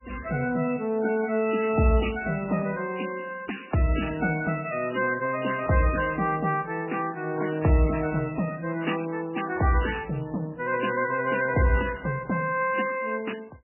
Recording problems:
lossy codec; MP3, then MP3, log-spectral distance 5 dB, nothing above 2.9 kHz

